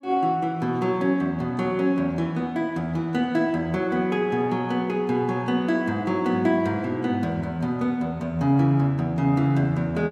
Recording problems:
none

